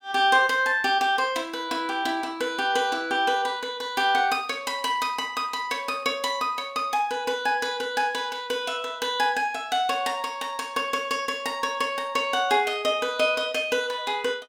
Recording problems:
none

